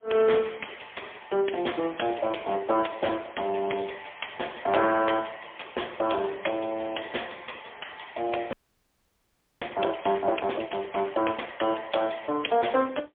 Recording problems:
phone line; 300 Hz to 3.4 kHz, AMR-NB, then MP3
audio freezing; at 8.5 s for 1 s

